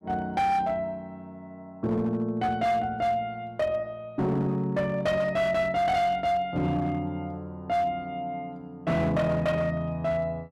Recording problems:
distorted audio; hard clipping, signal-to-distortion ratio 11 dB

